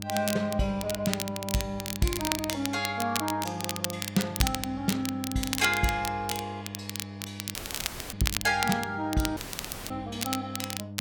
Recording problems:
hum; 50 Hz, harmonics up to 600 Hz, SNR 11 dB
crackle; vinyl, SNR 4 dB
dropout; at 7.5 s for 0.5 s and at 9.5 s for 0.5 s

